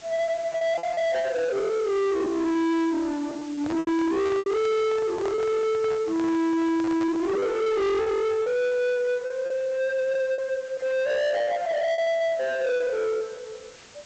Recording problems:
low-pass filter; nothing above 8 kHz
distorted audio; soft clipping, signal-to-distortion ratio 8 dB
hiss; slope -1 dB per octave, SNR 23 dB
lost packets; 10% of the sound replaced, filled with repeated pitch periods
handling noise; from 3.5 to 7.5 s; peak -6 dB vs average level

